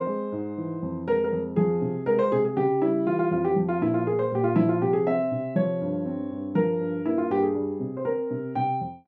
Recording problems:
none

